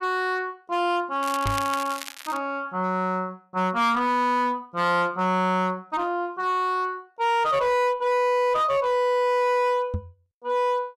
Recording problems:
distortion; hard clipping, signal-to-distortion ratio 11 dB
crackle; from 1 to 2.5 s; loose cable, SNR 12 dB
knock on the microphone; at 1.5 s and at 10 s; peak -1 dB vs average level

